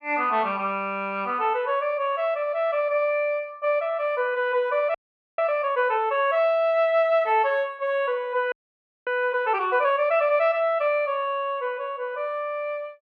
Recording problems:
frozen audio; at 5 s and at 8.5 s for 0.5 s

